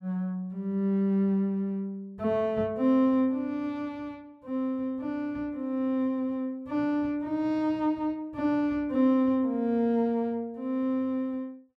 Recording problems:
none

